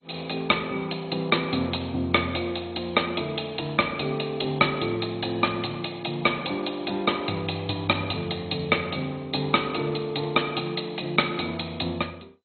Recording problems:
lossy compression; MP2, log-spectral distance 13 dB, nothing above 4.2 kHz

